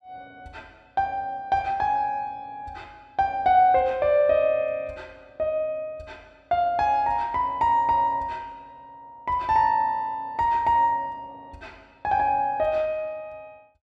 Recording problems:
none

